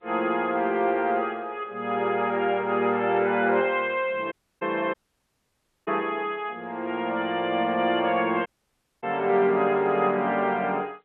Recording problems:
telephone audio; 260 Hz to 3.3 kHz, G.711
dropout; at 4.5 s, at 5 s for 1 s and at 8.5 s for 0.5 s

